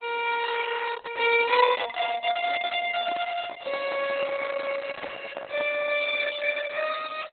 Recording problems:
lossy compression; Opus, log-spectral distance 6 dB, nothing above 3.8 kHz
microphone handling noise; from 3 to 6 s; peak -3 dB vs average level

